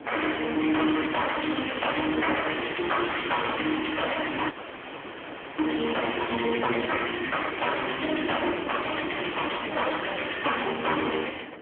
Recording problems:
phone line; 190 Hz to 3.3 kHz, AMR-NB
distorted audio; soft clipping, signal-to-distortion ratio 12 dB
background hiss; SNR 27 dB
wind on the microphone; below 940 Hz, SNR 18 dB
audio freezing; at 4.5 s for 1 s

